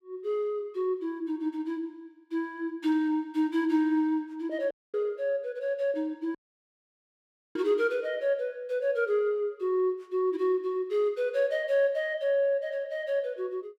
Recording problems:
dropout; at 4.5 s and at 6.5 s for 1 s

